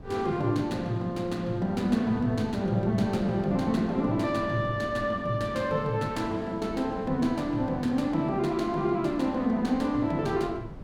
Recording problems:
wind noise; below 270 Hz, SNR 17 dB

